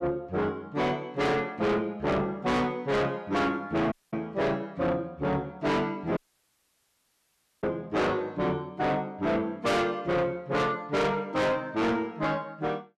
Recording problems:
distorted audio; soft clipping, signal-to-distortion ratio 6 dB
audio cutting out; at 4 s and at 6 s for 1.5 s

